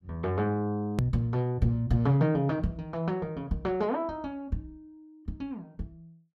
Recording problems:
hard cut with a click; at 1 s

